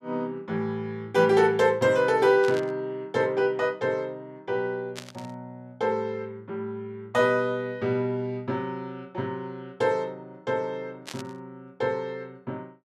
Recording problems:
burst of static; at 2.5 s, at 5 s and at 11 s; peak -7 dB vs average level

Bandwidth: 14.5 kHz